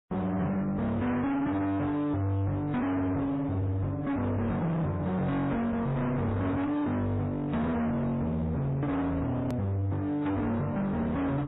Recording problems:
codec artefacts; MP3, then AAC, log-spectral distance 2 dB, nothing above 13.1 kHz
distortion; hard clipping, uneven, signal-to-distortion ratio 5 dB
edit click; at 9.5 s

